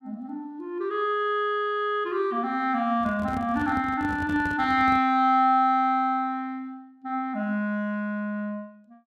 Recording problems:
handling noise; from 3 to 5 s; peak -8 dB vs average level

